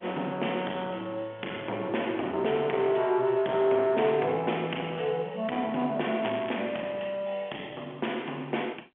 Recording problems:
phone line; 240 Hz to 3.4 kHz, G.711
distortion; soft clipping, signal-to-distortion ratio 13 dB
crackling; at 6 s; loose cable, SNR 15 dB

